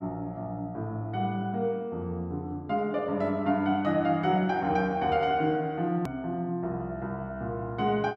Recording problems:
click at an edit; at 6 s

